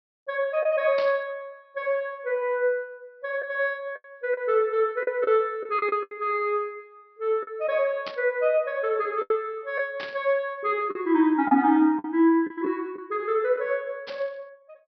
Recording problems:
treble cut off; nothing above 5.5 kHz
lost packets; 5% of the sound replaced, filled with the last packet
burst of static; 4 times, first at 1 s; peak -6 dB vs average level

